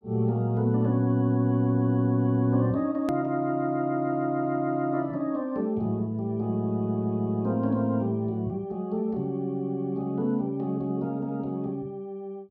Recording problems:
edit click; at 3 s

